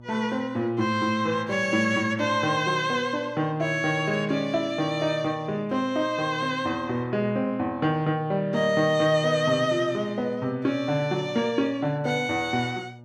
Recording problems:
electrical hum; 60 Hz, harmonics up to 1.2 kHz, SNR 21 dB

